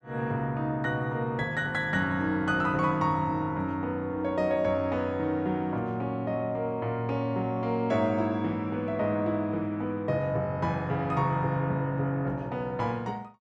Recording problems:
none

